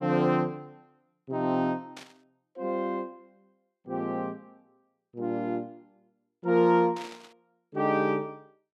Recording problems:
burst of static; at 2 s and at 7 s; peak -11 dB vs average level

